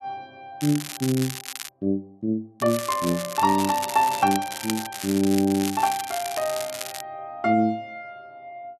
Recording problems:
crackling; from 0.5 to 1.5 s, from 2.5 to 4.5 s and from 4.5 to 7 s; loose cable, SNR 9 dB

